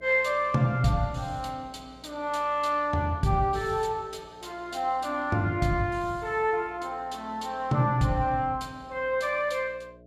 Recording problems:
electrical hum; 60 Hz, harmonics up to 660 Hz, SNR 25 dB

